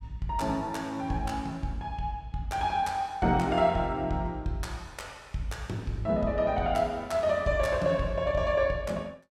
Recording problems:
none

